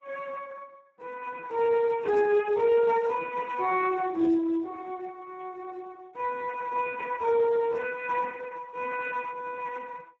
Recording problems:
codec artefacts; MP3, then Speex, log-spectral distance 3 dB

